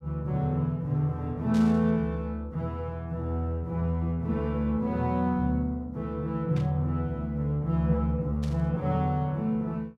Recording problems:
static burst; at 1.5 s, at 6.5 s and at 8.5 s; peak -12 dB vs average level

